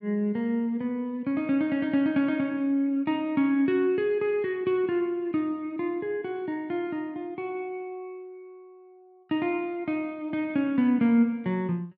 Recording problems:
none

